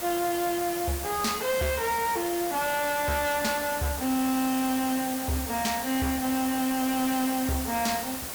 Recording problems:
distortion; hard clipping, signal-to-distortion ratio 10 dB
hiss; slope -2 dB per octave, SNR 6 dB

